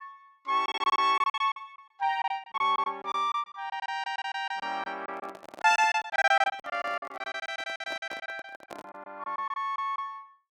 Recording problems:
packet loss; 18% of the sound replaced, filled with silence
handling noise; from 5 to 9 s; peak -8 dB vs average level

